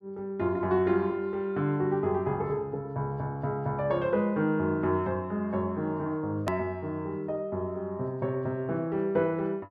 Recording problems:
edit click; at 6.5 s

